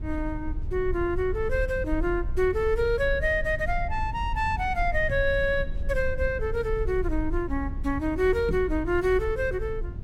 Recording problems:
low-frequency rumble; below 66 Hz, SNR 7 dB
microphone bump; at 5 s and at 8.5 s; peak -2 dB vs average level

